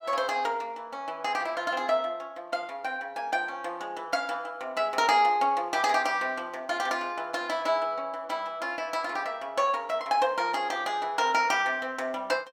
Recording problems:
none

